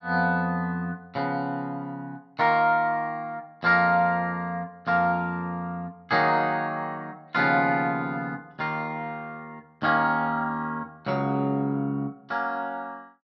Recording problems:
none

